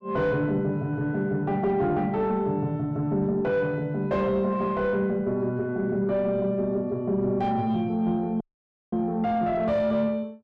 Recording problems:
distorted audio; soft clipping, signal-to-distortion ratio 11 dB
dropout; at 8.5 s for 0.5 s

